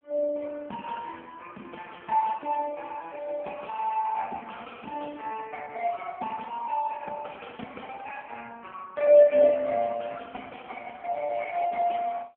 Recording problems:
telephone audio; 220 Hz to 3.3 kHz, AMR-NB

